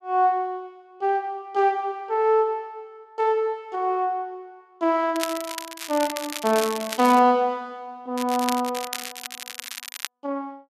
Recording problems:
crackling; from 5 to 7 s and from 8 to 10 s; loose cable, SNR 9 dB

